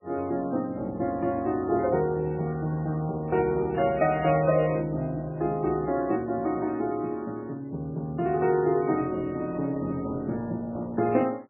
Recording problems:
lossy compression; MP3, log-spectral distance 2 dB, nothing above 2.5 kHz

